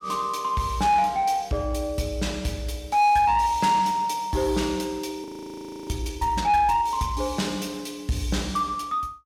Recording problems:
distortion; soft clipping, signal-to-distortion ratio 11 dB
frozen audio; at 5 s for 0.5 s

